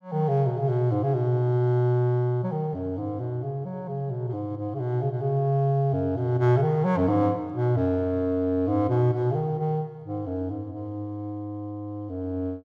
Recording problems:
none

